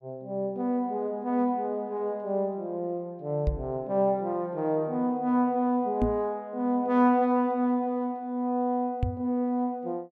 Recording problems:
microphone thump; at 3.5 s, at 6 s and at 9 s; peak +4 dB vs average level

